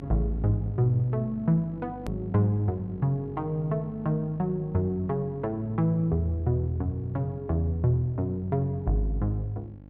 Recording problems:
hum; 50 Hz, harmonics up to 850 Hz, SNR 17 dB
edit click; at 2 s

